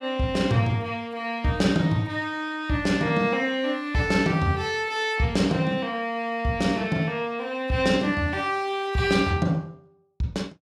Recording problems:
none

